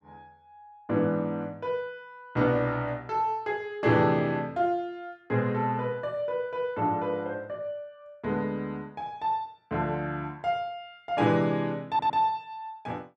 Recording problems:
stutter; at 12 s

